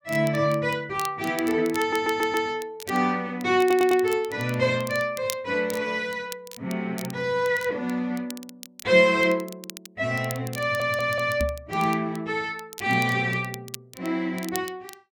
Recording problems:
crackle; vinyl, SNR 16 dB
stutter; at 2 s, at 3.5 s and at 11 s
microphone bump; at 11 s; peak -1 dB vs average level

